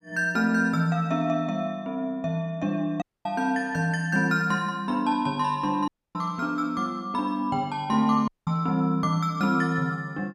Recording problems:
dropout; at 3 s, at 6 s and at 8.5 s

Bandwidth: 15.5 kHz